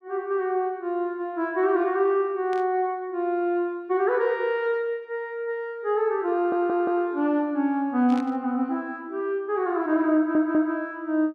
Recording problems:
burst of static; at 2.5 s and at 8 s; peak -13 dB vs average level
audio stuttering; at 6.5 s and at 10 s

